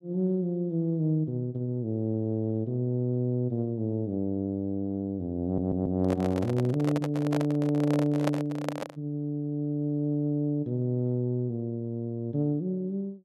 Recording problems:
stutter; at 5.5 s
microphone handling noise; from 5.5 to 9 s; peak +3 dB vs average level

